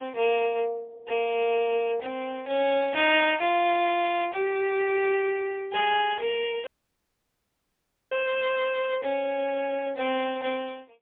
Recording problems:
phone line; 300 Hz to 3.5 kHz, AMR-NB, then MP3
audio cutting out; at 6.5 s for 1.5 s

